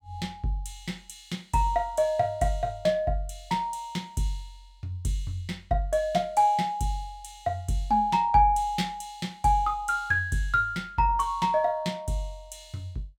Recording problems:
none

